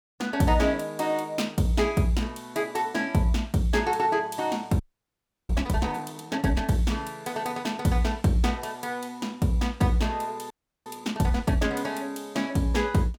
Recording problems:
audio freezing; at 5 s for 0.5 s and at 11 s

